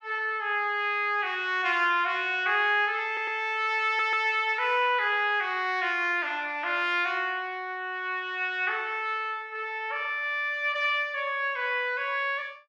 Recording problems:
stutter; at 3 s and at 4 s

